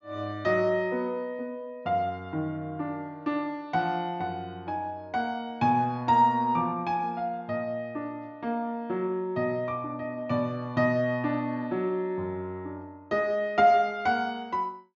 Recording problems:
treble missing; nothing above 7.2 kHz

